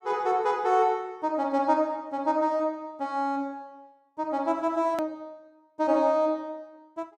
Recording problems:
edit click; at 5 s

